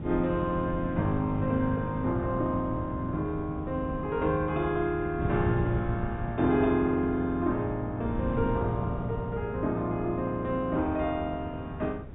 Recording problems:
treble cut off; nothing above 4 kHz
wind on the microphone; below 220 Hz, SNR 8 dB

